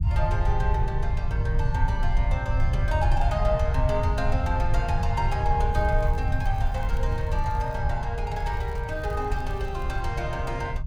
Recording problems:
rumble; below 92 Hz, SNR -3 dB
crackling; from 5.5 to 8 s and from 8.5 to 10 s; loose cable, SNR 27 dB

